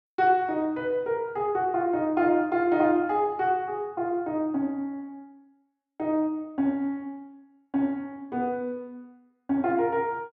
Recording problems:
none

